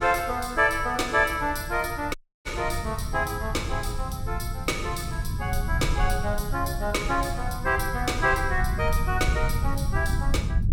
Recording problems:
low-frequency rumble; below 100 Hz, SNR 4 dB
dropout; at 2 s

